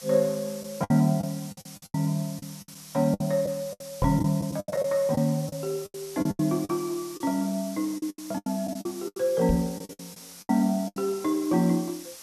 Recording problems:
background hiss; SNR 15 dB
packet loss; 14% of the sound replaced, filled with the last packet
microphone thump; at 4 s and at 9.5 s; peak +3 dB vs average level

